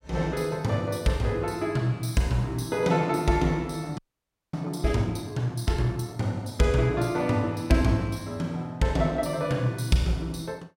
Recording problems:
audio freezing; at 4 s for 0.5 s

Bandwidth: 16 kHz